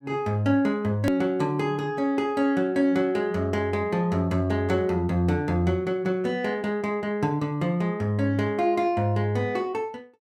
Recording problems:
edit click; at 1 s

